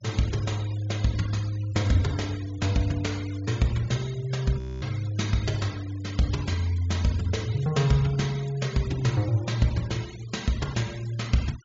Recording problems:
treble cut off; nothing above 7.4 kHz
noise reduction artefacts; signal-to-artefact ratio 19 dB
audio freezing; at 4.5 s

